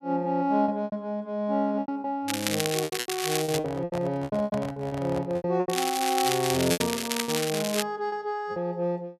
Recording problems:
packet loss; 13% of the sound replaced, filled with repeated pitch periods
crackle; from 2.5 to 3.5 s and from 5.5 to 8 s; loose cable, SNR 2 dB
microphone handling noise; from 3.5 to 5.5 s; peak -3 dB vs average level

